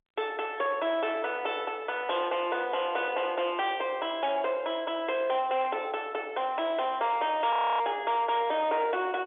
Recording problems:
telephone audio; 300 Hz to 3.6 kHz, G.711
distortion; soft clipping, signal-to-distortion ratio 10 dB
burst of static; at 3 s, at 5.5 s and at 7.5 s; peak -15 dB vs average level
frozen audio; at 7.5 s

